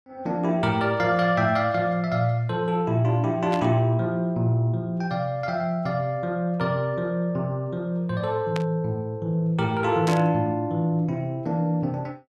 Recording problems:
static burst; at 3.5 s, at 8.5 s and at 10 s; peak -5 dB vs average level

